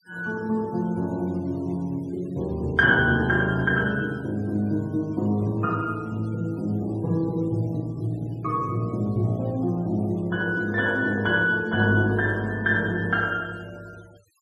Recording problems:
noise reduction artefacts; signal-to-artefact ratio 28 dB

